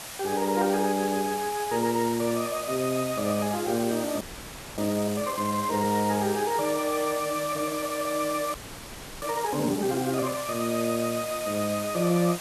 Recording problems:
background hiss; slope -1 dB per octave, SNR 9 dB
frozen audio; at 4 s for 0.5 s and at 8.5 s for 0.5 s

